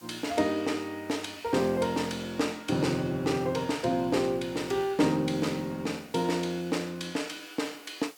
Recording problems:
background hiss; SNR 26 dB

